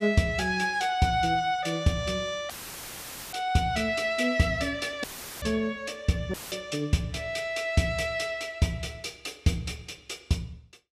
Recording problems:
dropout; at 2.5 s for 1 s, at 5 s and at 6.5 s; filled with static

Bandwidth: 14.5 kHz